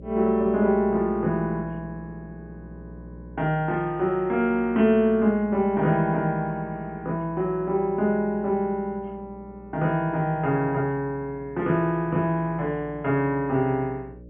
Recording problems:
treble cut off; nothing above 3.3 kHz
hum; 60 Hz, harmonics up to 600 Hz, SNR 20 dB

